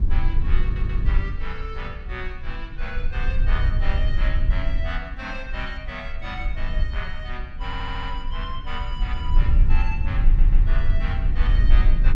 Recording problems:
rumble; below 50 Hz, strongest tone 22 Hz, SNR -9 dB
stutter; at 0.5 s, at 7.5 s and at 10 s

